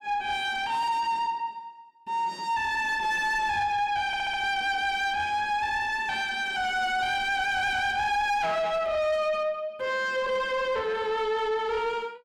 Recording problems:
distorted audio; soft clipping, signal-to-distortion ratio 10 dB
audio stuttering; at 4 s

